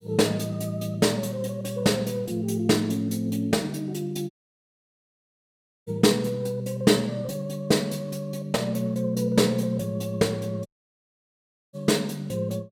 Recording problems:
dropout; at 4.5 s for 1.5 s and at 11 s for 1 s

